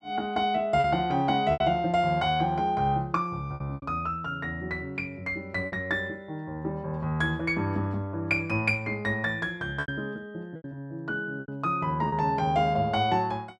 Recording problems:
packet loss; 4% of the sound replaced, filled with repeated pitch periods

